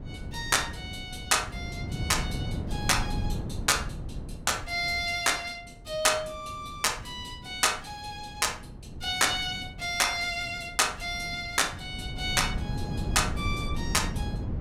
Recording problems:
wind on the microphone; below 190 Hz, SNR 9 dB

